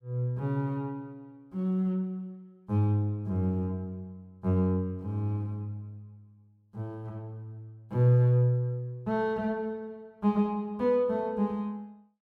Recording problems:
none

